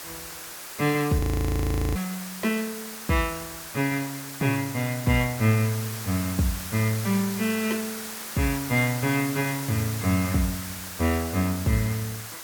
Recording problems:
hiss; SNR 9 dB
audio freezing; at 1 s for 1 s

